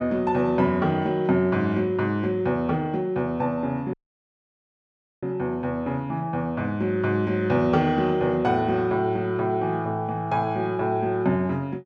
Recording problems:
audio cutting out; at 4 s for 1.5 s

